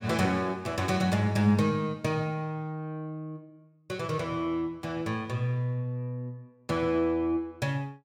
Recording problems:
none

